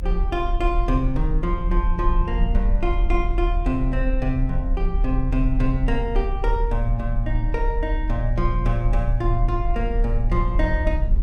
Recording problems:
rumble; below 44 Hz, strongest tone 38 Hz, SNR -1 dB

